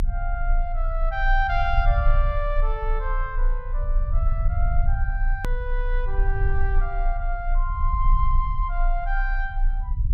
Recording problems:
low-frequency rumble; below 44 Hz, strongest tone 30 Hz, SNR -4 dB
click at an edit; at 5.5 s

